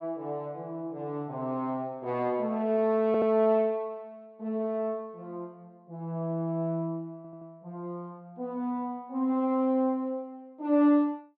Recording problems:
audio stuttering; at 3 s and at 7 s

